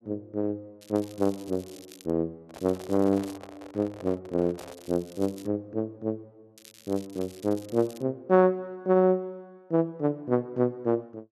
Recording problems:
crackle; 4 times, first at 1 s; loose cable, SNR 22 dB
microphone handling noise; from 2.5 to 5 s; peak -10 dB vs average level

